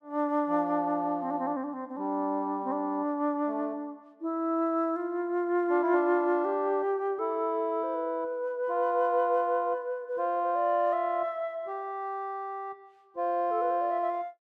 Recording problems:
none

